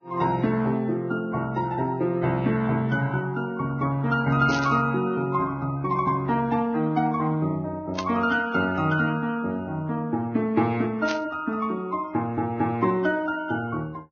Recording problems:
lossy codec; Vorbis, log-spectral distance 2 dB, nothing above 6.3 kHz
static burst; at 4.5 s, at 8 s and at 11 s; peak -2 dB vs average level

